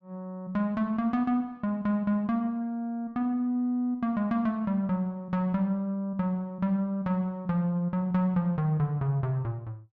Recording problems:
none

